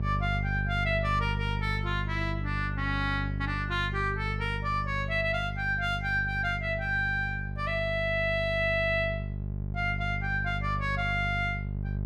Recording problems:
hum; 50 Hz, harmonics up to 600 Hz, SNR 4 dB

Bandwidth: 14.5 kHz